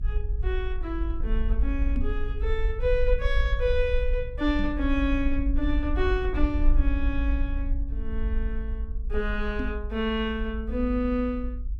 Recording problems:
low-frequency rumble; below 54 Hz, SNR 0 dB
microphone thump; at 2 s, at 4.5 s and at 9.5 s; peak +1 dB vs average level

